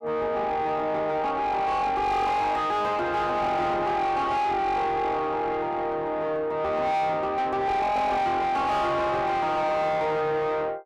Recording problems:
distortion; soft clipping, signal-to-distortion ratio 6 dB

